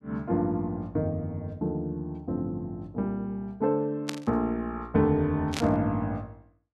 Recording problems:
burst of static; at 4 s and at 5.5 s; peak +1 dB vs average level

